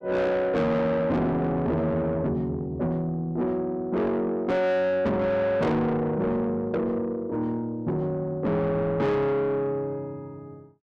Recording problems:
distorted audio; soft clipping, signal-to-distortion ratio 8 dB

